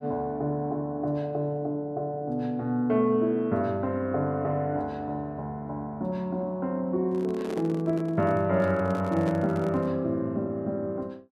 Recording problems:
microphone handling noise; from 7 to 10 s; peak -4 dB vs average level

